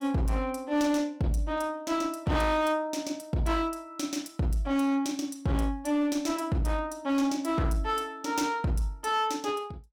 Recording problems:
distortion; hard clipping, uneven, signal-to-distortion ratio 11 dB

